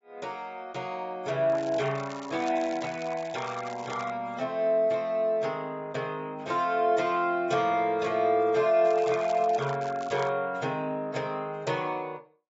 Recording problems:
treble cut off; nothing above 7.6 kHz
lossy compression; AAC, log-spectral distance 2 dB
crackling; from 1.5 to 4 s and from 9 to 10 s; loose cable, SNR 21 dB

